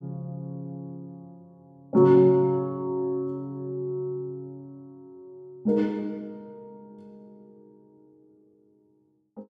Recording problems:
none

